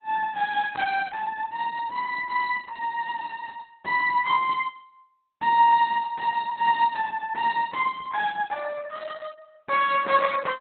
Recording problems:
codec artefacts; Opus, log-spectral distance 4 dB, nothing above 4 kHz

